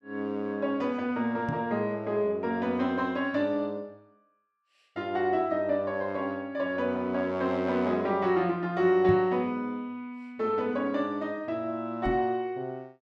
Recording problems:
knock on the microphone; at 1.5 s, at 9 s and at 12 s; peak +2 dB vs average level

